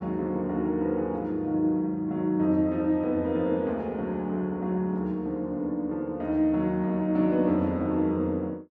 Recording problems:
none

